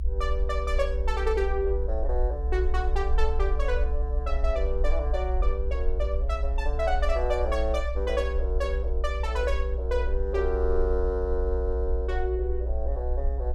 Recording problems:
rumble; below 60 Hz, SNR -1 dB

